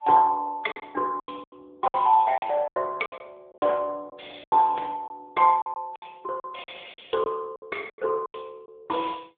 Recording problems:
phone line; 280 Hz to 3.5 kHz, AMR-NB
packet loss; 13% of the sound replaced, filled with silence

